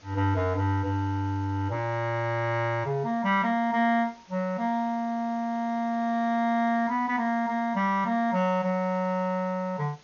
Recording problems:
treble missing; nothing above 6.8 kHz
background hiss; slope -2 dB per octave, SNR 28 dB

